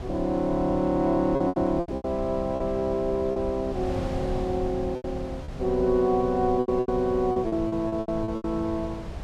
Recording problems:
wind on the microphone; below 210 Hz, SNR 11 dB
lost packets; 11% of the sound replaced, filled with repeated pitch periods

